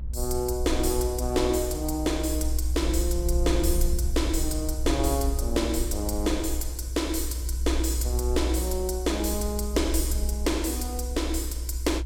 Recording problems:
rumble; below 62 Hz, strongest tone 62 Hz, SNR 2 dB

